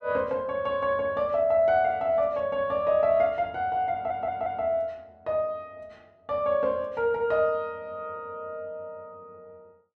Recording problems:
audio stuttering; at 4 s

